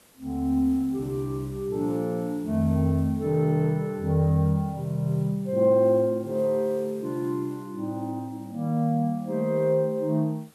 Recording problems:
hiss; slope -3 dB per octave, SNR 28 dB

